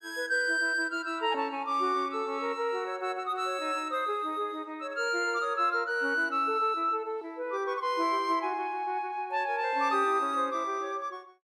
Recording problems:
none

